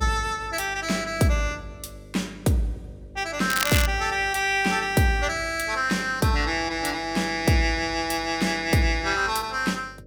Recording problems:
hum; 50 Hz, harmonics up to 600 Hz, SNR 22 dB
crackling; at 3.5 s; loose cable, SNR 3 dB

